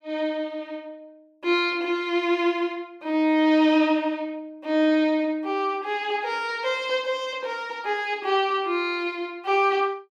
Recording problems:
none

